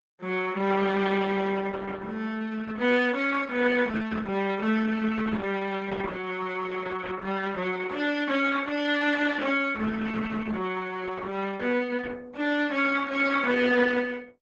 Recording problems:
lossy compression; Opus, log-spectral distance 4 dB, nothing above 7.6 kHz

